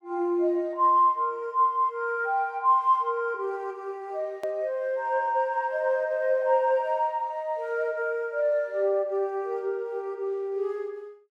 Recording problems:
edit click; at 4.5 s

